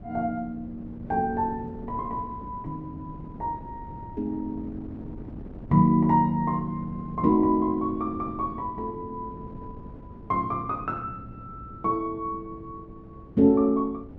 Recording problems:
wind noise; below 280 Hz, SNR 16 dB

